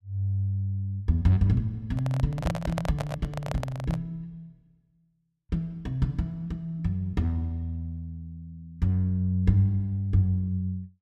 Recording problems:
microphone handling noise; from 2 to 4 s; peak +1 dB vs average level

